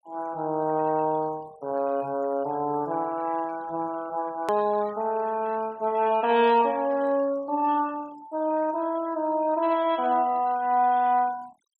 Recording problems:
noise reduction artefacts; signal-to-artefact ratio 22 dB
edit click; at 4.5 s

